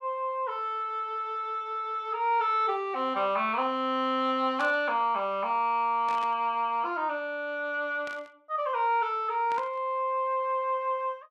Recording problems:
static burst; 4 times, first at 4.5 s; peak -11 dB vs average level

